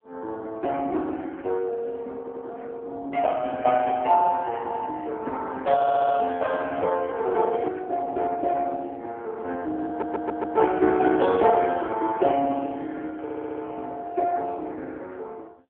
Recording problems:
phone line; 260 Hz to 3.6 kHz, AMR-NB
audio stuttering; 4 times, first at 2 s

